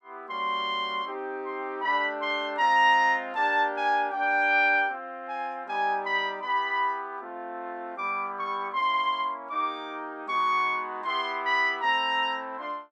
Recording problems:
none

